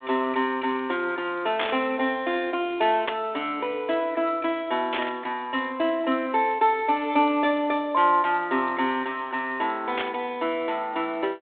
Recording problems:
phone line; 220 Hz to 3.7 kHz, G.726
static burst; 4 times, first at 1.5 s; peak +1 dB vs average level

